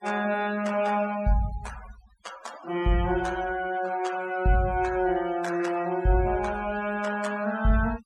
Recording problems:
noise reduction artefacts; signal-to-artefact ratio 18 dB

